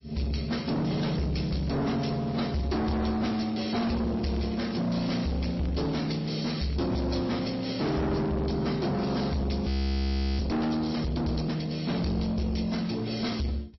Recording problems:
lossy codec; AAC, then MP3, log-spectral distance 5 dB, nothing above 5.7 kHz
distortion; soft clipping, signal-to-distortion ratio 7 dB
crackling; from 1.5 to 2.5 s, at 3 s and from 4 to 8.5 s; loose cable, SNR 22 dB
audio freezing; at 9.5 s for 0.5 s

